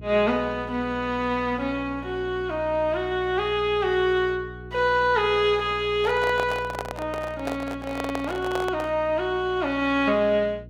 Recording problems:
hum; 60 Hz, harmonics up to 480 Hz, SNR 17 dB
handling noise; from 6 to 9 s; peak -1 dB vs average level

